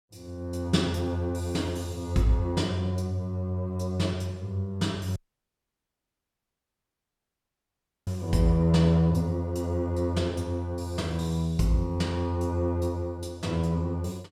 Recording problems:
audio cutting out; at 5 s for 3 s

